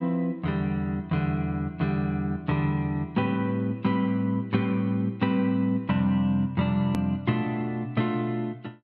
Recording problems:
edit click; at 7 s

